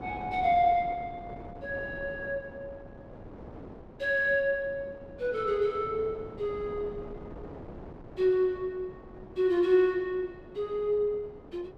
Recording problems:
wind on the microphone; below 570 Hz, SNR 17 dB

